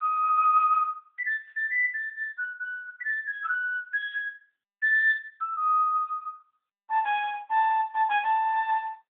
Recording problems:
phone line; 900 Hz to 2 kHz, AMR-NB

